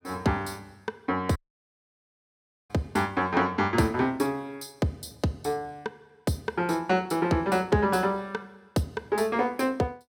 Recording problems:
dropout; at 1.5 s for 1.5 s

